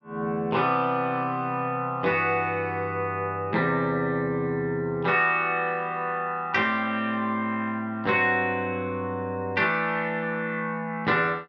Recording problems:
none

